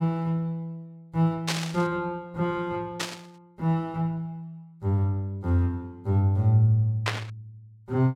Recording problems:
static burst; at 1.5 s, at 3 s and at 7 s; peak +4 dB vs average level

